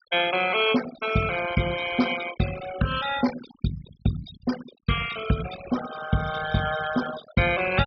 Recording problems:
treble cut off; nothing above 5.5 kHz
noise reduction artefacts; signal-to-artefact ratio 9 dB

